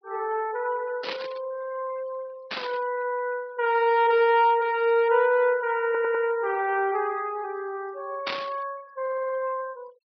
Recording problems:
low-pass filter; nothing above 5.5 kHz
noise reduction artefacts; signal-to-artefact ratio 25 dB
static burst; at 1 s, at 2.5 s and at 8.5 s; peak -1 dB vs average level
audio stuttering; at 6 s and at 9 s

